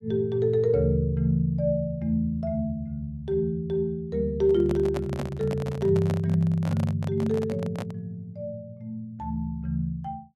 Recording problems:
handling noise; from 4.5 to 8 s; peak -3 dB vs average level

